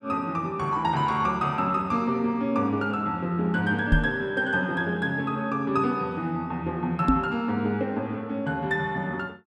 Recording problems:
microphone thump; at 4 s and at 7 s; peak +7 dB vs average level

